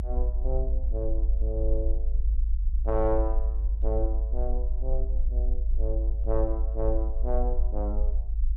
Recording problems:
low-frequency rumble; below 52 Hz, strongest tone 22 Hz, SNR -5 dB

